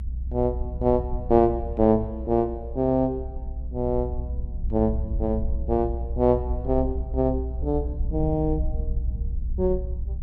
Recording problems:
rumble; below 64 Hz, strongest tone 60 Hz, SNR 6 dB

